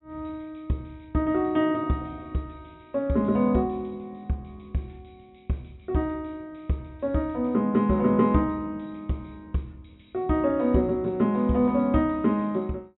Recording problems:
treble missing; nothing above 3.7 kHz

